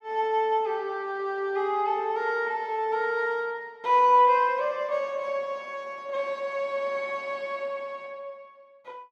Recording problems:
none

